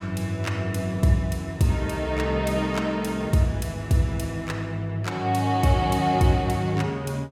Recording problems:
none

